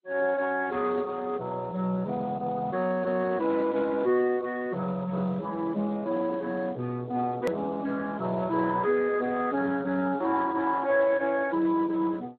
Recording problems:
lossy compression; MP2, then Speex, log-spectral distance 3 dB, nothing above 13.1 kHz
hard cut with a click; at 7.5 s

